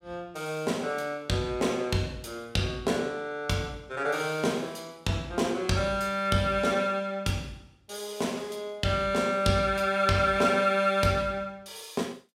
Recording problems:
none

